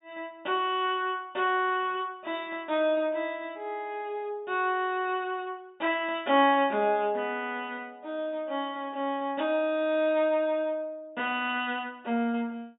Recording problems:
treble missing; nothing above 4 kHz

